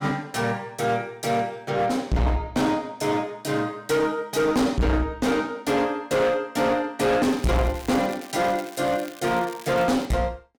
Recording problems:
distorted audio; hard clipping, uneven, signal-to-distortion ratio 6 dB
crackle; from 7.5 to 10 s; loose cable, SNR 19 dB

